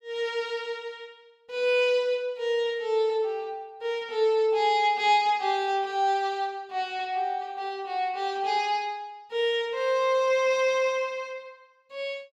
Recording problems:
none

